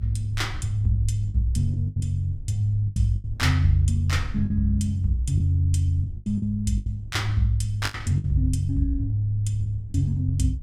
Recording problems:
low-frequency rumble; below 70 Hz, SNR 14 dB
lost packets; 8% of the sound replaced, filled with the last packet

